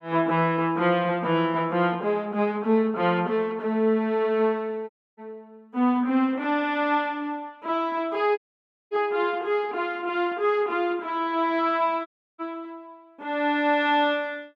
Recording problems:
audio cutting out; at 5 s, at 8.5 s for 0.5 s and at 12 s

